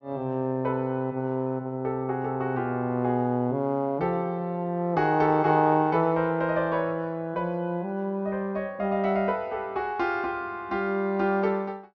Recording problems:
treble missing; nothing above 6.5 kHz

